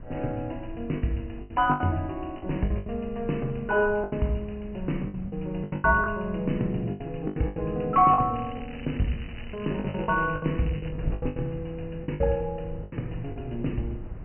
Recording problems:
low-pass filter; nothing above 3 kHz
wind on the microphone; below 130 Hz, SNR 13 dB
packet loss; 13% of the sound replaced, filled with the last packet
crackling; from 8.5 to 11 s; loose cable, SNR 19 dB

